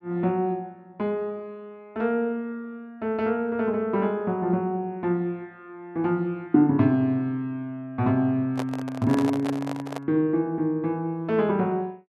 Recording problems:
handling noise; from 8.5 to 10 s; peak -2 dB vs average level

